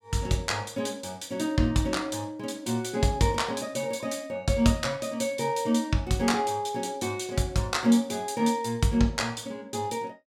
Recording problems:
none

